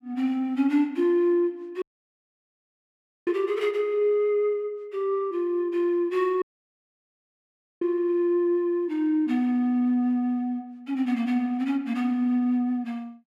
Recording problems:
audio cutting out; at 2 s for 1.5 s and at 6.5 s for 1.5 s

